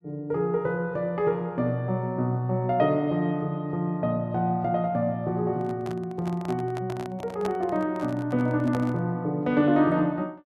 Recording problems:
handling noise; from 5.5 to 9 s; peak -4 dB vs average level

